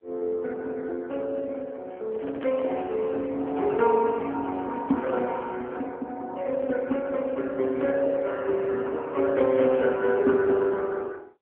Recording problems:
telephone audio; 240 Hz to 3.2 kHz, AMR-NB
handling noise; from 2 to 6 s; peak -10 dB vs average level

